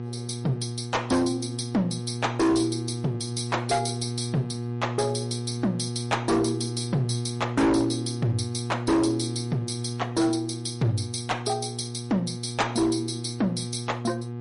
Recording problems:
codec artefacts; MP3, log-spectral distance 5 dB, nothing above 10.4 kHz
distorted audio; hard clipping, uneven, signal-to-distortion ratio 7 dB
hum; 60 Hz, harmonics up to 1.2 kHz, SNR 6 dB

